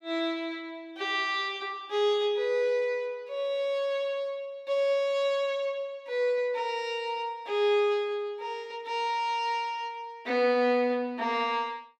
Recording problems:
none

